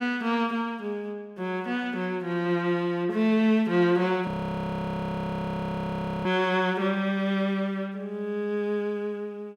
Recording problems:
frozen audio; at 4.5 s for 2 s

